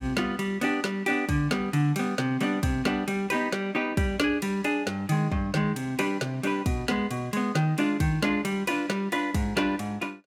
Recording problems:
none

